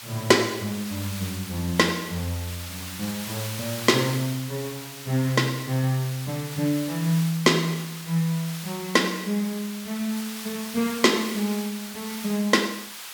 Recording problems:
background hiss; SNR 10 dB

